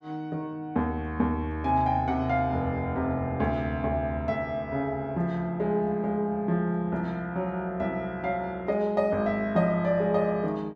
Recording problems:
none

